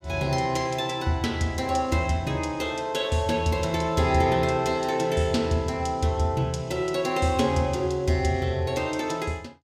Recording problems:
none

